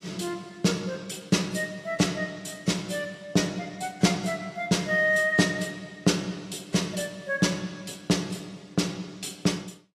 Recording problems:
codec artefacts; AAC, log-spectral distance 3 dB, nothing above 15.5 kHz

